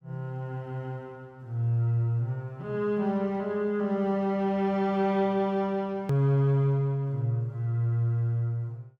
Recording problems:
edit click; at 6 s

